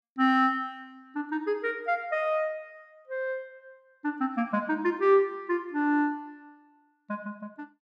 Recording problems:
none

